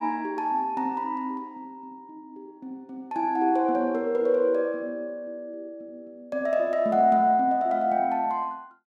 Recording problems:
none

